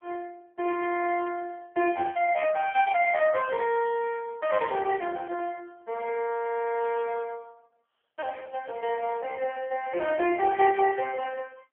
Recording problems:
telephone audio; 300 Hz to 3.1 kHz, AMR-NB

